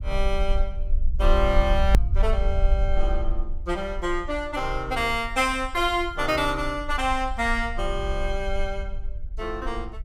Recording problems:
rumble; below 50 Hz, SNR 3 dB
hard cut with a click; at 2 s

